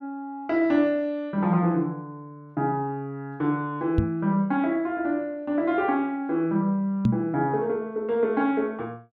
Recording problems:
microphone bump; at 4 s and at 7 s; peak +7 dB vs average level

